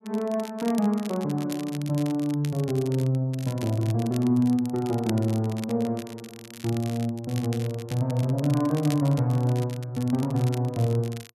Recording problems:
crackle; vinyl, SNR 18 dB

